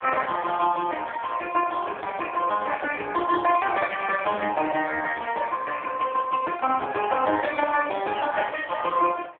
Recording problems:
phone line; 240 Hz to 3.1 kHz, AMR-NB

